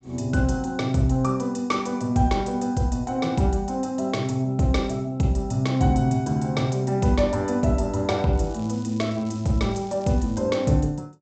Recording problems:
low-pass filter; nothing above 8 kHz
crackling; from 8.5 to 10 s; loose cable, SNR 27 dB

